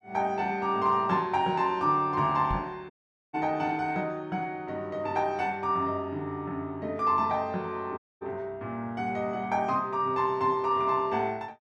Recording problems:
microphone bump; at 2.5 s; peak -2 dB vs average level
dropout; at 3 s and at 8 s

